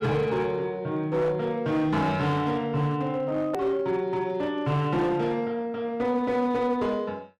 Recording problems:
distortion; hard clipping, uneven, signal-to-distortion ratio 12 dB
click at an edit; at 3.5 s

